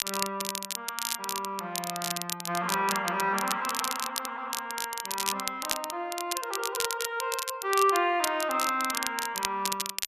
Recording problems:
crackling; vinyl, SNR 3 dB

